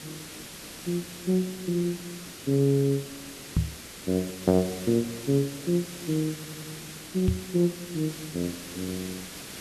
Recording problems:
background hiss; SNR 12 dB
microphone bump; at 3.5 s and at 7.5 s; peak +6 dB vs average level
audio stuttering; at 6.5 s

